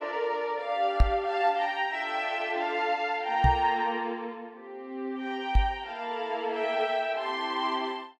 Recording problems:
knock on the microphone; at 1 s, at 3.5 s and at 5.5 s; peak +10 dB vs average level

